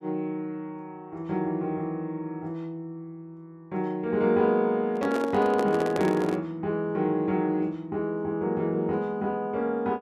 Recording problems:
handling noise; from 5 to 6.5 s; peak +1 dB vs average level

